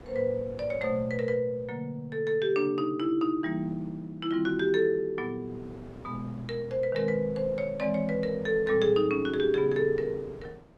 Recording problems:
wind on the microphone; below 590 Hz, SNR 21 dB

